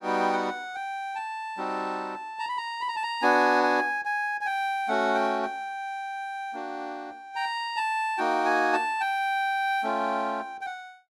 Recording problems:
none

